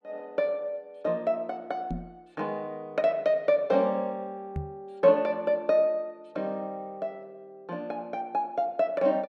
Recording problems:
microphone bump; at 2 s and at 4.5 s; peak -1 dB vs average level

